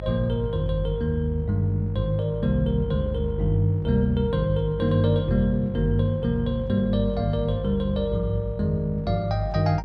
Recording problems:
electrical hum; 50 Hz, harmonics up to 550 Hz, SNR 9 dB

